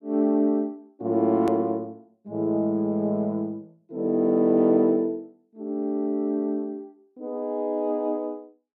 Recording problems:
hard cut with a click; at 1.5 s

